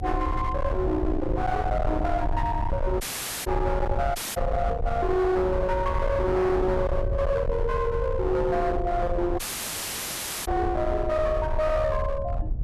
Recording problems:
distorted audio; hard clipping, signal-to-distortion ratio 8 dB
rumble; below 140 Hz, SNR 5 dB
dropout; at 3 s, at 4 s and at 9.5 s for 1 s

